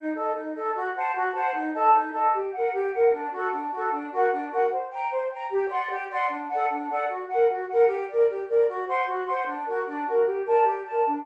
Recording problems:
codec artefacts; MP2, log-spectral distance 2 dB

